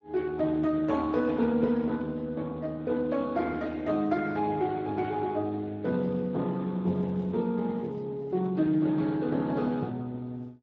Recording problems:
codec artefacts; Speex, log-spectral distance 2 dB

